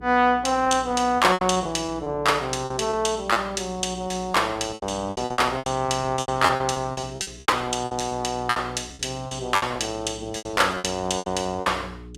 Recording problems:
electrical hum; 60 Hz, harmonics up to 420 Hz, SNR 19 dB
packet loss; 17% of the sound replaced, filled with repeated pitch periods

